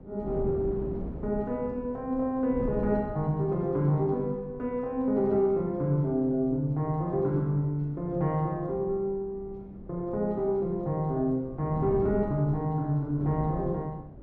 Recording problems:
wind noise; below 300 Hz, SNR 13 dB

